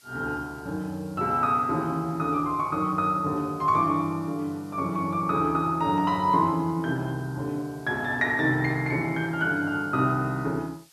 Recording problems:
background hiss; slope +2 dB per octave, SNR 28 dB

